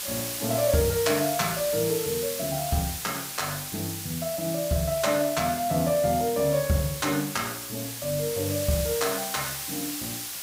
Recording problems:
background hiss; slope +2 dB per octave, SNR 5 dB

